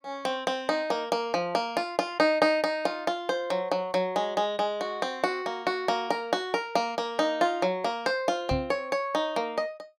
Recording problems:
knock on the microphone; at 8.5 s; peak +1 dB vs average level

